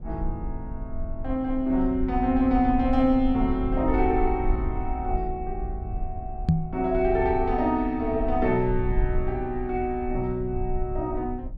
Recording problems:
rumble; below 56 Hz, SNR 8 dB
knock on the microphone; at 6.5 s; peak +8 dB vs average level

